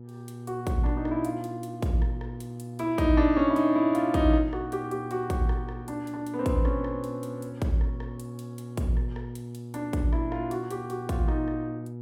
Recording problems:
hum; 60 Hz, harmonics up to 480 Hz, SNR 12 dB

